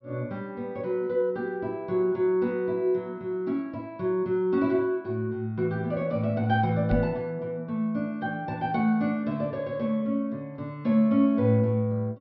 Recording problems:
treble missing; nothing above 5.5 kHz
microphone thump; at 7 s; peak 0 dB vs average level

